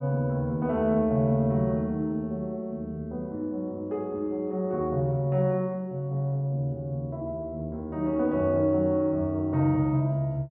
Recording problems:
none

